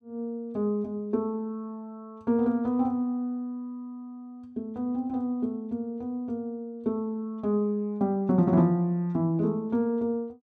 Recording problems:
none

